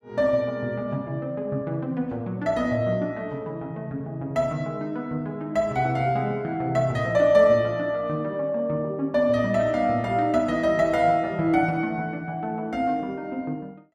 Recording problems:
none

